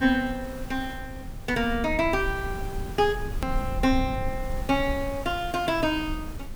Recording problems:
hiss; slope -4 dB per octave, SNR 17 dB
rumble; below 86 Hz, SNR 9 dB
edit click; at 3.5 s

